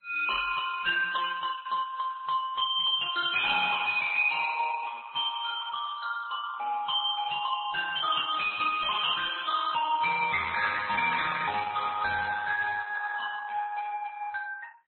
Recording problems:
lossy codec; Opus, then MP3, log-spectral distance 5 dB
distortion; soft clipping, signal-to-distortion ratio 9 dB

